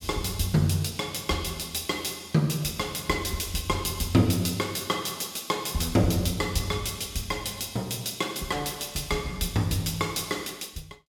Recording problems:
none

